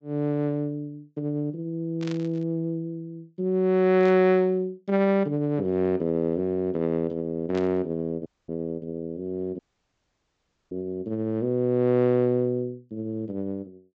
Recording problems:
treble cut off; nothing above 8 kHz
static burst; at 2 s, at 4 s and at 7.5 s; peak -10 dB vs average level
dropout; at 8.5 s and at 9.5 s for 1 s

